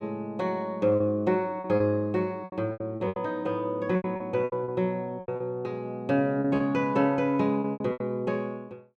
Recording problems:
packet loss; 12% of the sound replaced, filled with repeated pitch periods

